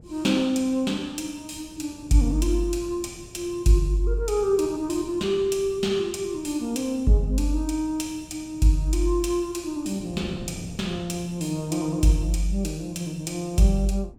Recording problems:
wind noise; below 260 Hz, SNR 20 dB

